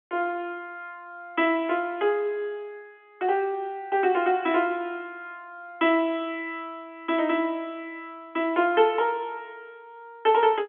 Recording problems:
telephone audio; 240 Hz to 3.5 kHz, G.711

